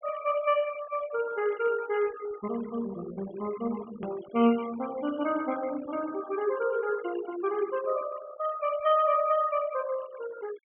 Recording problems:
treble missing; nothing above 3.4 kHz
noise reduction artefacts; signal-to-artefact ratio 17 dB
click at an edit; at 4 s

